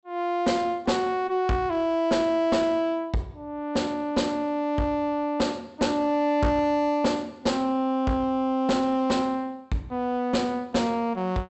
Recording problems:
treble missing; nothing above 8 kHz
distortion; soft clipping, signal-to-distortion ratio 10 dB

